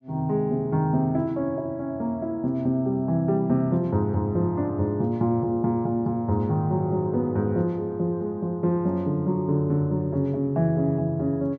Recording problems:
none

